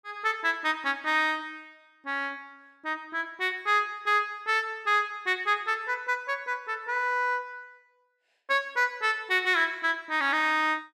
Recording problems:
none

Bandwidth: 14.5 kHz